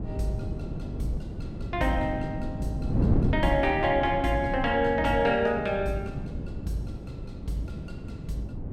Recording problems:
wind noise; below 230 Hz, SNR 5 dB

